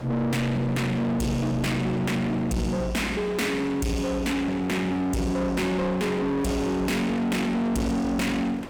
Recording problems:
distortion; soft clipping, signal-to-distortion ratio 7 dB
wind noise; below 1.2 kHz, SNR 17 dB

